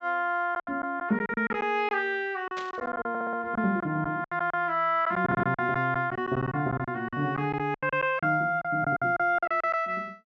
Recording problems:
treble cut off; nothing above 8 kHz
lost packets; 13% of the sound replaced, filled with silence
burst of static; at 2.5 s; peak -8 dB vs average level
audio stuttering; at 3 s and at 5 s

